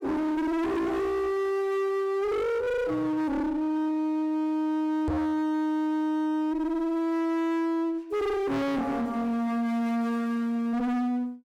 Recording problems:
distorted audio; hard clipping, uneven, signal-to-distortion ratio 7 dB
microphone bump; at 5 s; peak +3 dB vs average level

